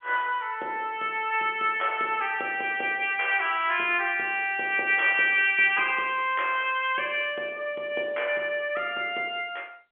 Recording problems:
telephone audio; 280 Hz to 3.5 kHz, G.711

